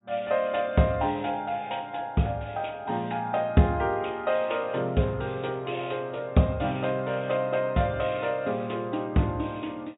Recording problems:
low-pass filter; nothing above 4 kHz

